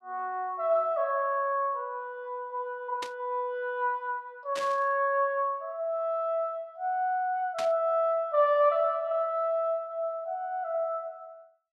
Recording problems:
burst of static; at 3 s, at 4.5 s and at 7.5 s; peak -4 dB vs average level

